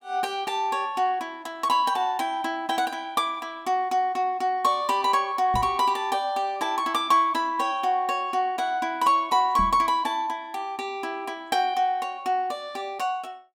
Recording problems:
knock on the microphone; at 5.5 s and at 9.5 s; peak -3 dB vs average level

